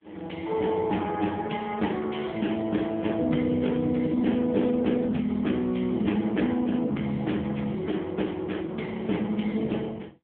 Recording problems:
phone line; 110 Hz to 3.5 kHz, AMR-NB

